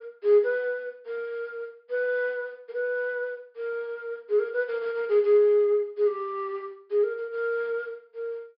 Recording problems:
treble missing; nothing above 5.5 kHz

